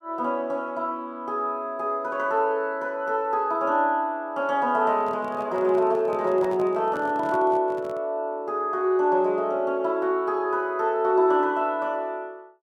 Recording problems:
handling noise; from 5 to 8 s; peak -11 dB vs average level

